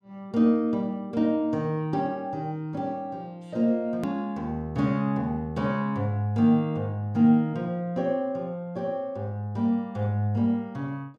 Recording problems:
edit click; at 4 s

